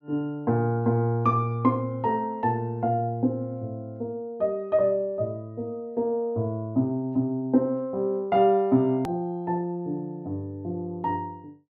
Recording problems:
click at an edit; at 9 s

